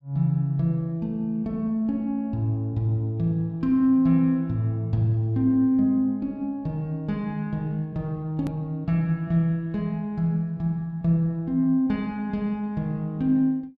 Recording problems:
click at an edit; at 8.5 s

